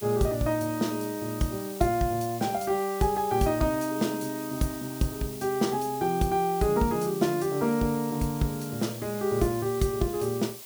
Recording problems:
hiss; SNR 13 dB

